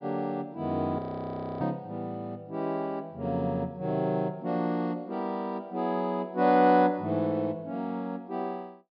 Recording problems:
low-pass filter; nothing above 5.5 kHz
frozen audio; at 1 s for 0.5 s

